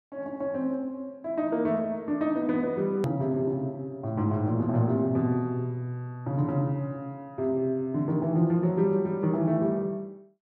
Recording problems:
click at an edit; at 3 s

